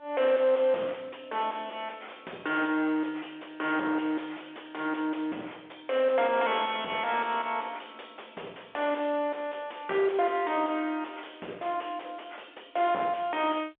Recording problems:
phone line; 280 Hz to 3.5 kHz, G.711
distortion; soft clipping, signal-to-distortion ratio 5 dB

